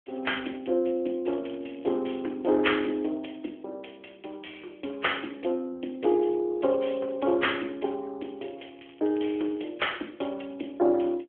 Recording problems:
telephone audio; 260 Hz to 3.3 kHz, AMR-NB
crackling; at 1.5 s and from 8.5 to 9.5 s; loose cable, SNR 27 dB

